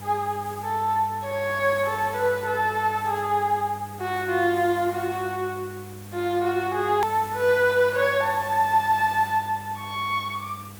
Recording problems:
hum; 50 Hz, harmonics up to 700 Hz, SNR 18 dB
background hiss; slope -3 dB per octave, SNR 19 dB
click at an edit; at 7 s

